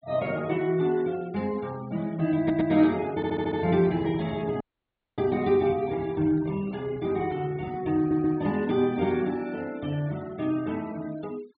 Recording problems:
low-pass filter; nothing above 4.4 kHz
noise reduction artefacts; signal-to-artefact ratio 23 dB
stutter; at 2.5 s, at 3 s and at 8 s
microphone handling noise; from 3.5 to 8.5 s; peak -8 dB vs average level
dropout; at 4.5 s for 0.5 s

